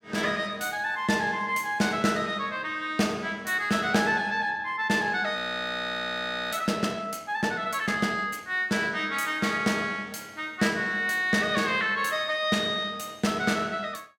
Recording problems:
audio freezing; at 5.5 s for 1 s

